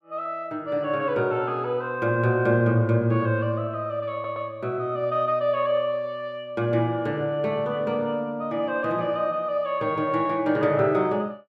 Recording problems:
audio stuttering; at 4 s

